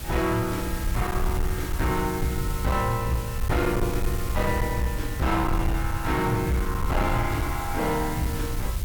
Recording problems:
distortion; hard clipping, signal-to-distortion ratio 12 dB
background hiss; SNR 11 dB
rumble; below 86 Hz, SNR 4 dB

